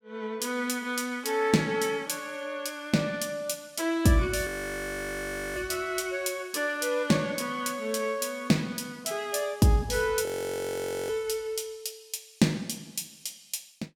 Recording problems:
audio freezing; at 4.5 s for 1 s and at 10 s for 1 s

